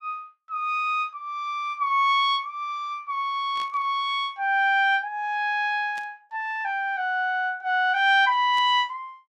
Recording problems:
static burst; at 3.5 s, at 6 s and at 8.5 s; peak -15 dB vs average level

